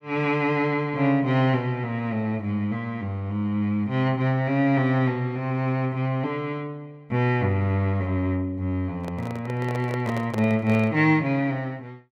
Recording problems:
handling noise; from 9 to 11 s; peak -5 dB vs average level

